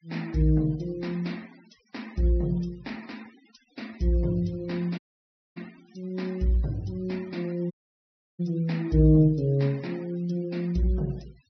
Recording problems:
treble missing; nothing above 5.8 kHz
noise reduction artefacts; signal-to-artefact ratio 26 dB
dropout; at 5 s for 0.5 s and at 7.5 s for 0.5 s

